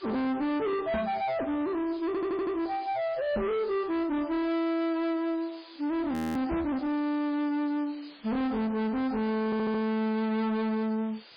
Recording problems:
lossy compression; MP3, log-spectral distance 4 dB, nothing above 18.9 kHz
distortion; soft clipping, signal-to-distortion ratio 7 dB
background hiss; SNR 22 dB
microphone bump; at 1 s, at 3.5 s and at 6.5 s; peak +5 dB vs average level
audio stuttering; at 2 s and at 9.5 s
audio freezing; at 6 s

